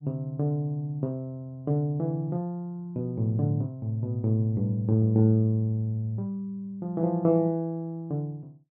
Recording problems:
none

